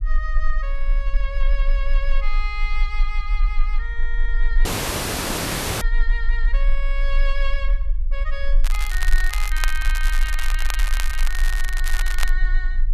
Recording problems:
rumble; below 36 Hz, strongest tone 26 Hz, SNR -6 dB
dropout; at 4.5 s for 1 s
crackle; from 8.5 to 12 s; loose cable, SNR 1 dB

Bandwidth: 13.5 kHz